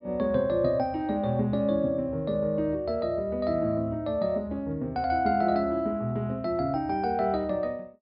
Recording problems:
treble missing; nothing above 5.1 kHz

